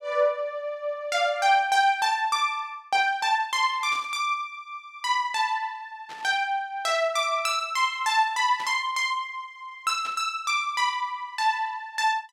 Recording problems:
static burst; 4 times, first at 4 s; peak -12 dB vs average level

